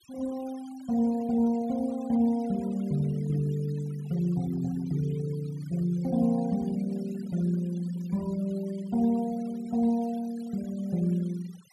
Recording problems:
denoising artefacts; signal-to-artefact ratio 23 dB

